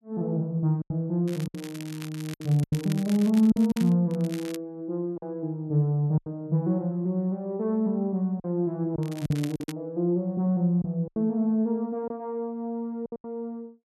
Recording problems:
lost packets; 7% of the sound replaced, filled with silence
crackling; from 1.5 to 4 s, at 4 s and at 9 s; loose cable, SNR 17 dB

